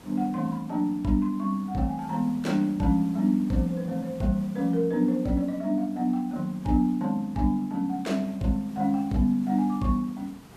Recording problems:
hiss; slope -5 dB per octave, SNR 23 dB

